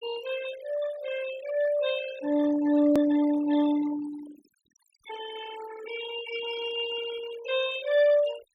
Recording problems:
noise reduction artefacts; signal-to-artefact ratio 13 dB
hard cut with a click; at 3 s

